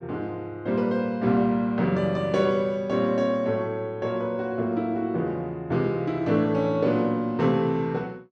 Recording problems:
none

